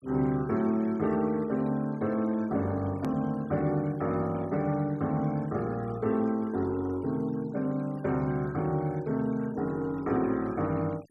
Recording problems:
noise reduction artefacts; signal-to-artefact ratio 25 dB
hard cut with a click; at 3 s

